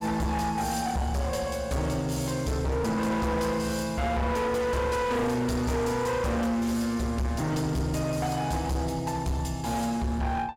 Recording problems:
distortion; hard clipping, signal-to-distortion ratio 8 dB

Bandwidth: 16.5 kHz